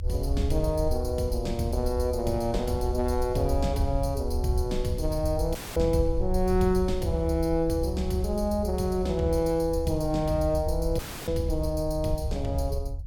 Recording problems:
rumble; below 72 Hz, SNR 5 dB
audio cutting out; at 5.5 s and at 11 s

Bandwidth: 17.5 kHz